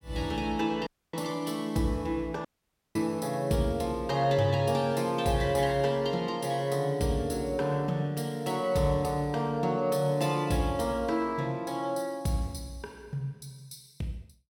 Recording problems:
dropout; at 1 s and at 2.5 s for 0.5 s

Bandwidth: 16.5 kHz